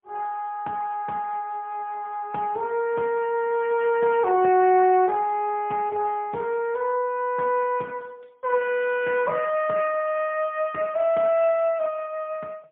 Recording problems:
phone line; 300 Hz to 3.1 kHz, AMR-NB, then MP3

